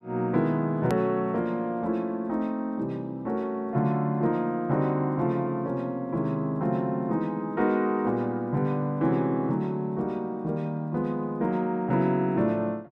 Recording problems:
click at an edit; at 1 s

